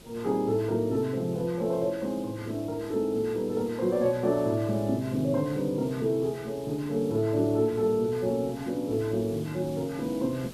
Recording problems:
background hiss; SNR 19 dB

